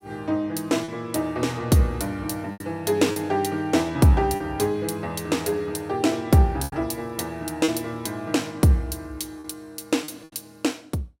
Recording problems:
packet loss; 4% of the sound replaced, filled with repeated pitch periods

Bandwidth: 16 kHz